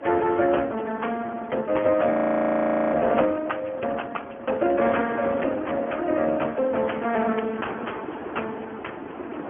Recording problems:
phone line; 130 Hz to 3.1 kHz, Speex
wind noise; below 940 Hz, SNR 13 dB
audio freezing; at 2 s for 1 s

